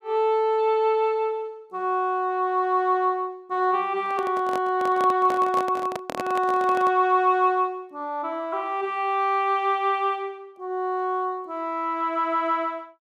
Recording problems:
handling noise; from 4 to 7 s; peak -3 dB vs average level

